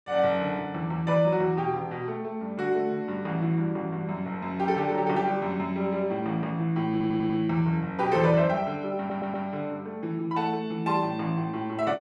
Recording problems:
audio stuttering; at 7 s and at 9 s

